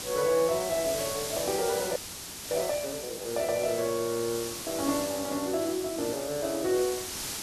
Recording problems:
hiss; SNR 6 dB
frozen audio; at 2 s for 0.5 s

